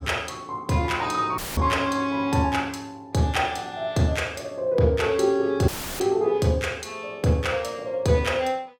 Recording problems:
audio cutting out; at 1.5 s and at 5.5 s; filled with static

